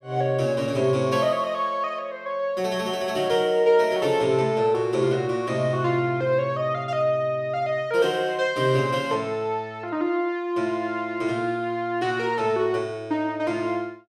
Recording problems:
none

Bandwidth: 14.5 kHz